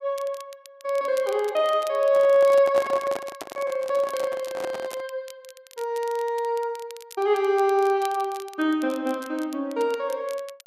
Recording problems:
crackling; vinyl, SNR 22 dB
handling noise; from 2 to 5 s; peak -4 dB vs average level

